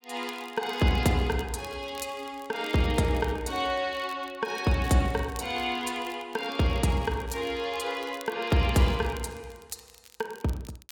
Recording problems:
crackling; vinyl, SNR 22 dB

